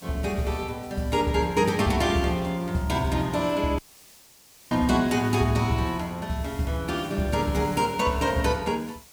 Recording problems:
background hiss; SNR 23 dB
audio cutting out; at 4 s for 1 s

